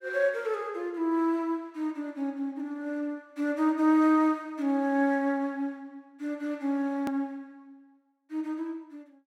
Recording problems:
hard cut with a click; at 7 s

